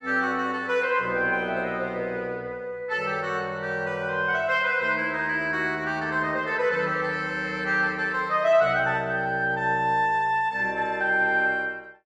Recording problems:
none

